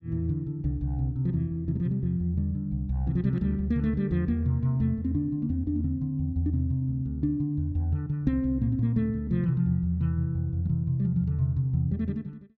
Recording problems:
none

